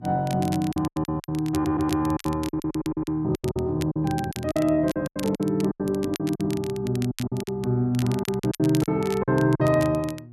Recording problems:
hum; 60 Hz, harmonics up to 360 Hz, SNR 21 dB
crackle; vinyl, SNR 16 dB
packet loss; 15% of the sound replaced, filled with silence
stutter; at 1.5 s and at 2.5 s

